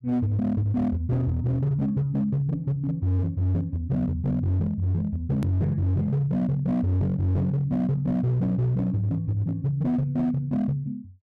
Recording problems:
distortion; hard clipping, signal-to-distortion ratio 11 dB
hard cut with a click; at 5.5 s

